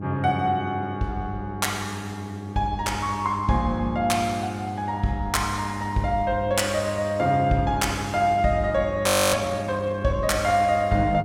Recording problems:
hum; 50 Hz, harmonics up to 800 Hz, SNR 10 dB
audio freezing; at 9 s

